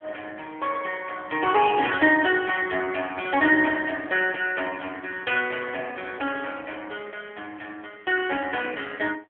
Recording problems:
telephone audio; 220 Hz to 3.3 kHz, AMR-NB

